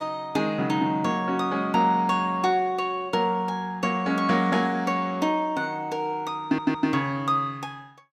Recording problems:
audio stuttering; at 6.5 s

